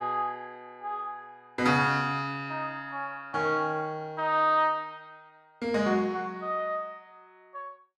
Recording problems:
none

